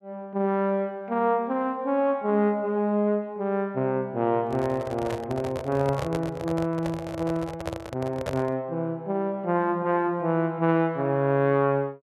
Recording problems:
microphone handling noise; from 4.5 to 8.5 s; peak -1 dB vs average level

